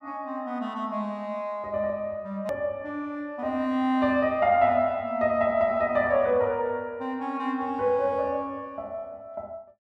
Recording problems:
edit click; at 2.5 s

